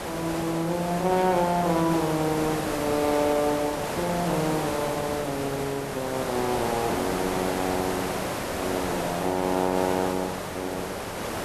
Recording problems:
background hiss; SNR 3 dB

